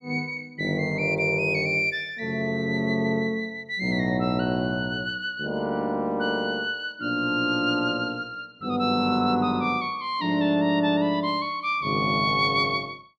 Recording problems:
none

